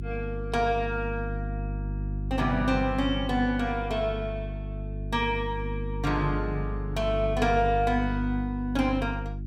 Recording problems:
electrical hum; 50 Hz, harmonics up to 350 Hz, SNR 5 dB

